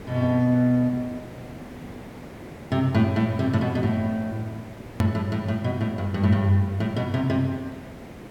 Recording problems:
hiss; SNR 17 dB
click at an edit; at 5 s

